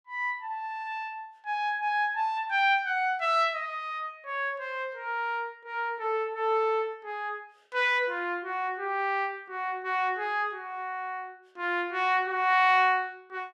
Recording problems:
none

